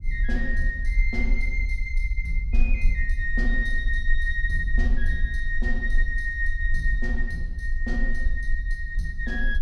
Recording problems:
low-frequency rumble; below 42 Hz, strongest tone 24 Hz, SNR -1 dB

